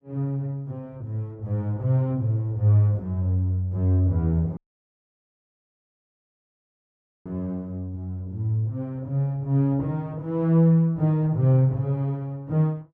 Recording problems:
audio cutting out; at 4.5 s for 2.5 s

